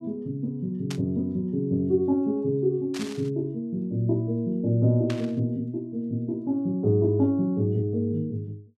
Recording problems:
static burst; at 1 s, at 3 s and at 5 s; peak -6 dB vs average level

